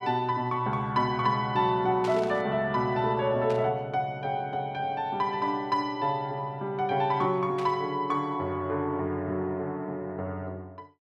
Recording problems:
static burst; at 2 s, at 3.5 s and at 7.5 s; peak -8 dB vs average level

